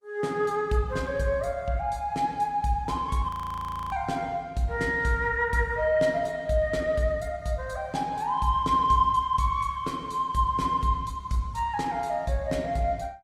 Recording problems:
lossy codec; Opus, log-spectral distance 2 dB, nothing above 18.3 kHz
audio freezing; at 3.5 s for 0.5 s

